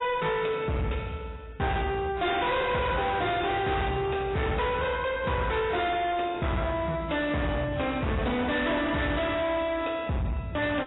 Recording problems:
lossy compression; AAC, log-spectral distance 4 dB, nothing above 3.8 kHz
distorted audio; hard clipping, signal-to-distortion ratio 6 dB

